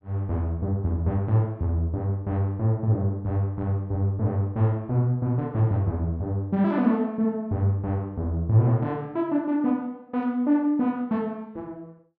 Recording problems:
none

